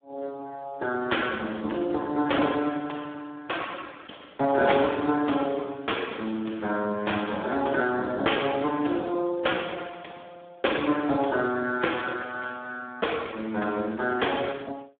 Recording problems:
telephone audio; 240 Hz to 3.5 kHz, Speex

